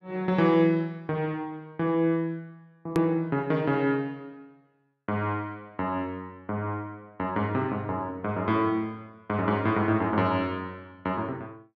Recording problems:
hard cut with a click; at 3 s

